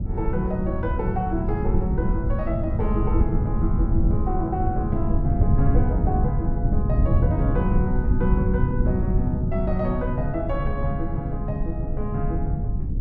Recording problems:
rumble; below 120 Hz, SNR -3 dB

